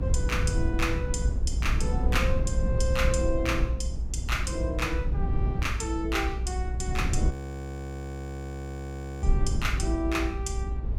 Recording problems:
low-frequency rumble; below 92 Hz, SNR -2 dB
frozen audio; at 7.5 s for 2 s

